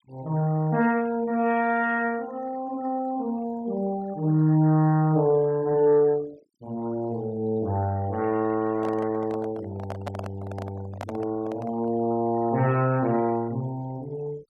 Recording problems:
noise reduction artefacts; signal-to-artefact ratio 24 dB
handling noise; from 8.5 to 12 s; peak -5 dB vs average level

